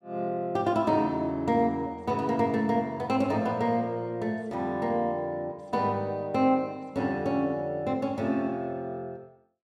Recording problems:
none

